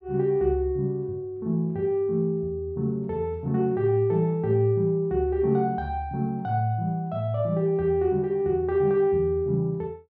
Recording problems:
none

